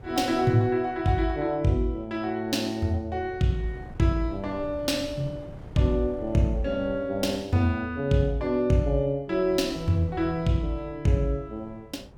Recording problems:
wind on the microphone; below 240 Hz, SNR 18 dB

